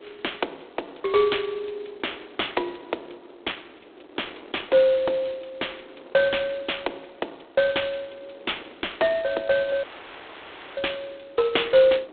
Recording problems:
telephone audio; 280 Hz to 3.6 kHz, G.726
wind noise; below 730 Hz, SNR 23 dB
dropout; at 10 s for 1 s

